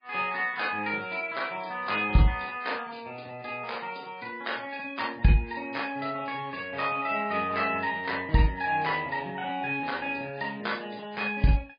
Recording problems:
codec artefacts; MP3, log-spectral distance 4 dB, nothing above 4.2 kHz

